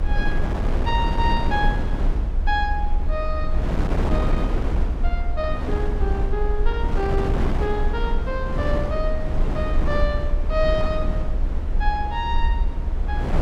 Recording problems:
rumble; below 52 Hz, strongest tone 28 Hz, SNR 0 dB
wind on the microphone; below 470 Hz, SNR 1 dB

